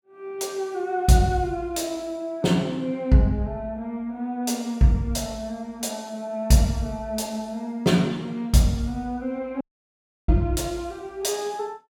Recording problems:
audio cutting out; at 9.5 s for 0.5 s

